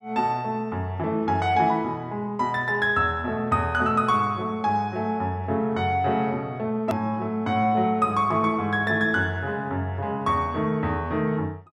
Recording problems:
edit click; at 7 s

